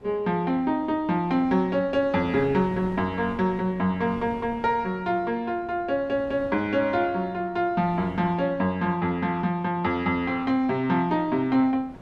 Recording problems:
wind noise; below 490 Hz, SNR 20 dB

